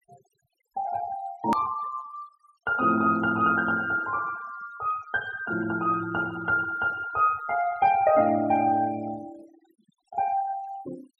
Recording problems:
noise reduction artefacts; signal-to-artefact ratio 20 dB
edit click; at 1.5 s

